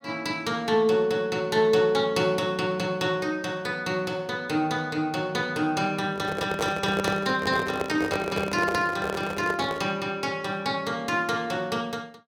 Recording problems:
microphone handling noise; from 6 to 10 s; peak +1 dB vs average level

